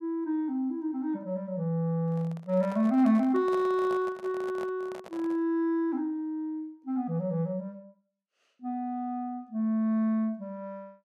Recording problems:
handling noise; from 2 to 5.5 s; peak -8 dB vs average level

